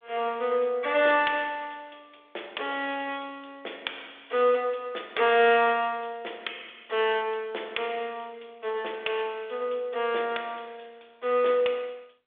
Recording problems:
phone line; 340 Hz to 3.6 kHz, G.726

